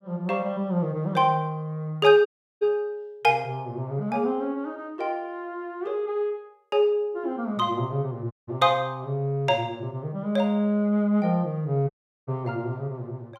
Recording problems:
dropout; at 2.5 s, at 8.5 s and at 12 s

